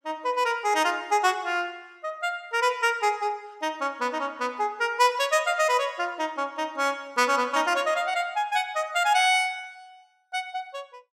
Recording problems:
none

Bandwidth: 16.5 kHz